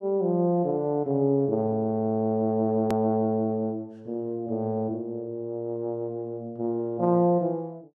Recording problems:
click at an edit; at 3 s

